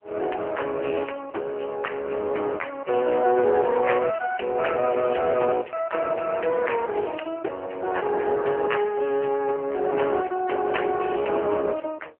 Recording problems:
phone line; 320 Hz to 3 kHz, AMR-NB

